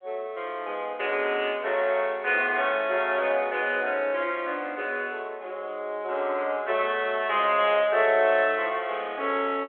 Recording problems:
phone line; 280 Hz to 3.5 kHz, G.726

